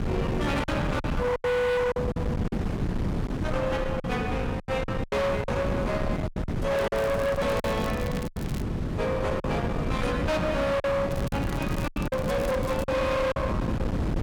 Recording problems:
distorted audio; hard clipping, signal-to-distortion ratio 7 dB
hum; 60 Hz, harmonics up to 600 Hz, SNR 20 dB
wind noise; below 410 Hz, SNR 2 dB
packet loss; 9% of the sound replaced, filled with silence
crackling; from 7 to 8.5 s and from 11 to 13 s; loose cable, SNR 16 dB

